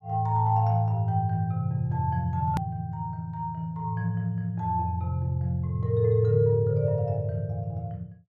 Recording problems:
edit click; at 2.5 s

